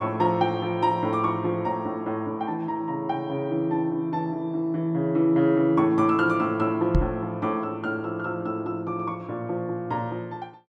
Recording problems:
microphone bump; at 7 s; peak +6 dB vs average level

